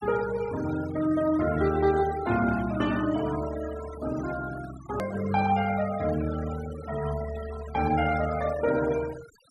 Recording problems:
noise reduction artefacts; signal-to-artefact ratio 14 dB
hard cut with a click; at 5 s

